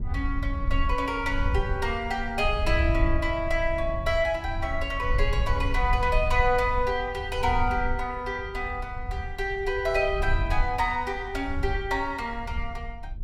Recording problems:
rumble; below 74 Hz, SNR 5 dB

